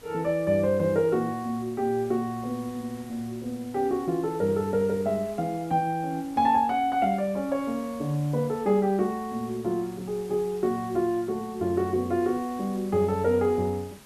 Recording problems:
background hiss; slope -3 dB per octave, SNR 22 dB

